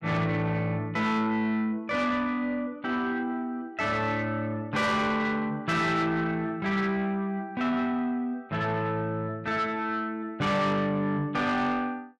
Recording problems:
distortion; soft clipping, signal-to-distortion ratio 11 dB

